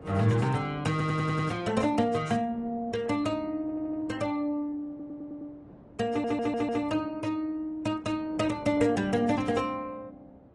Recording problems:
codec artefacts; Opus, then AAC, log-spectral distance 2 dB, nothing above 10.4 kHz
wind noise; below 480 Hz, SNR 21 dB
audio stuttering; 4 times, first at 1 s

